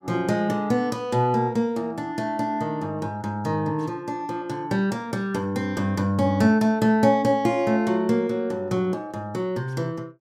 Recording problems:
none

